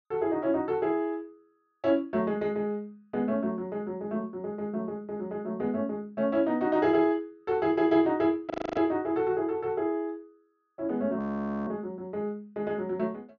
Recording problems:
treble cut off; nothing above 6.8 kHz
audio freezing; at 8.5 s and at 11 s

